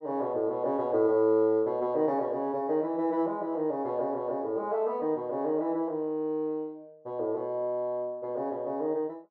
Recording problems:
treble missing; nothing above 8 kHz

